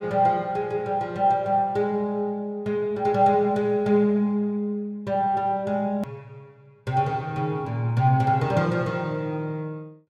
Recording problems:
hard cut with a click; at 6 s

